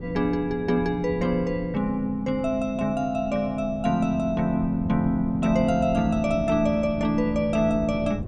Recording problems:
wind noise; below 230 Hz, SNR 13 dB

